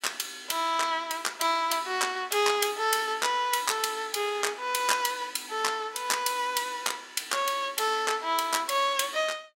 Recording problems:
none

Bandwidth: 16.5 kHz